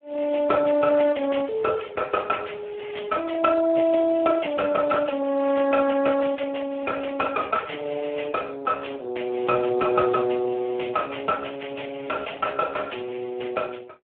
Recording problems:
phone line; 300 Hz to 2.5 kHz, Speex

